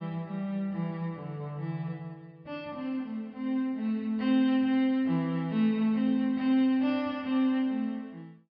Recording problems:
treble cut off; nothing above 5.5 kHz

